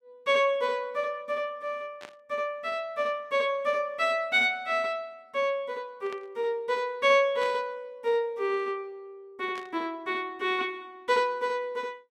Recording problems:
static burst; 4 times, first at 2 s; peak -10 dB vs average level

